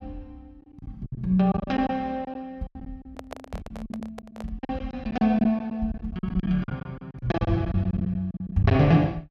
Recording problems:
packet loss; 15% of the sound replaced, filled with silence
handling noise; from 3 to 4.5 s; peak -8 dB vs average level

